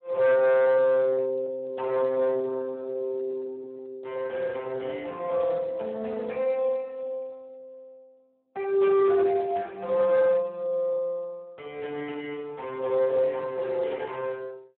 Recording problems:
phone line; 260 Hz to 2.9 kHz, Speex
distortion; hard clipping, signal-to-distortion ratio 12 dB

